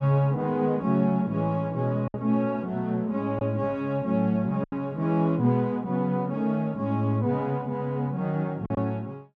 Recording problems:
lost packets; 2% of the sound replaced, filled with silence

